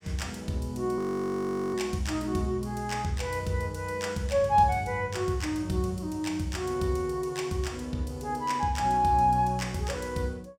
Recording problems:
audio freezing; at 1 s for 1 s

